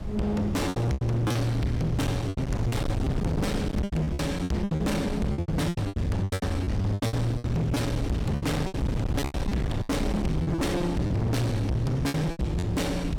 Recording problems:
distorted audio; hard clipping, signal-to-distortion ratio 6 dB
wind on the microphone; below 240 Hz, SNR 6 dB
packet loss; 15% of the sound replaced, filled with repeated pitch periods

